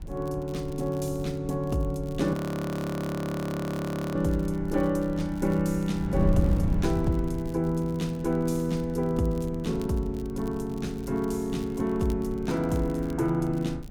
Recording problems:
wind on the microphone; below 130 Hz, SNR 9 dB
crackle; vinyl, SNR 26 dB
frozen audio; at 2.5 s for 2 s

